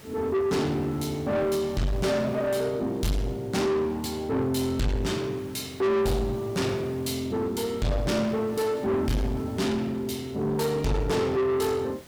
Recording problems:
distorted audio; soft clipping, signal-to-distortion ratio 7 dB
background hiss; slope -3 dB per octave, SNR 24 dB

